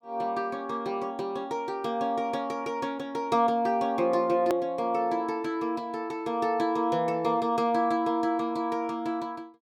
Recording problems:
hard cut with a click; at 4.5 s

